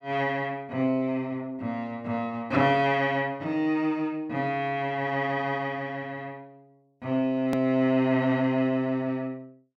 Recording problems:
hard cut with a click; at 7.5 s

